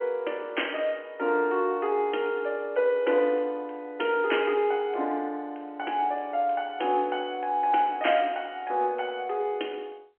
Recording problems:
phone line; 260 Hz to 3.2 kHz, G.711

